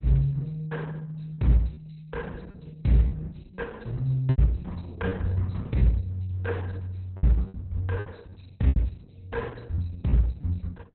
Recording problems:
codec artefacts; Opus, log-spectral distance 4 dB, nothing above 4.1 kHz
packet loss; 6% of the sound replaced, filled with repeated pitch periods

